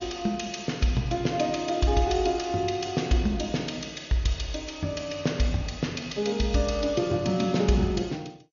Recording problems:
codec artefacts; MP2, log-spectral distance 5 dB, nothing above 6.7 kHz

